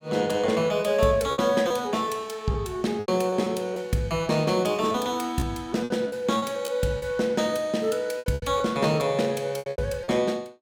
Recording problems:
lost packets; 8% of the sound replaced, filled with repeated pitch periods

